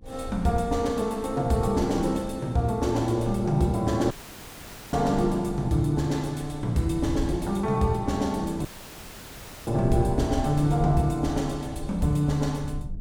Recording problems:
low-frequency rumble; below 98 Hz, SNR 13 dB
dropout; at 4 s for 1 s and at 8.5 s for 1 s

